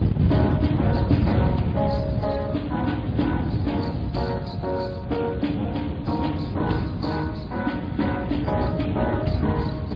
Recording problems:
codec artefacts; MP3, then Speex, log-spectral distance 3 dB
wind noise; below 220 Hz, SNR 0 dB

